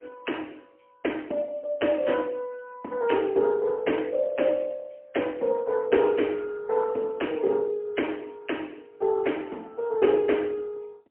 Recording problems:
phone line; 220 Hz to 3.2 kHz, AMR-NB, then MP3

